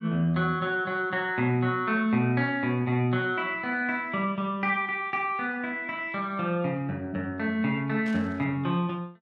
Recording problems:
burst of static; at 8 s; peak -14 dB vs average level

